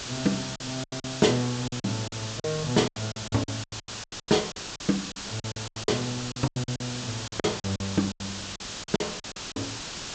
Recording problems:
treble cut off; nothing above 8 kHz
background hiss; SNR 5 dB
packet loss; 18% of the sound replaced, filled with silence

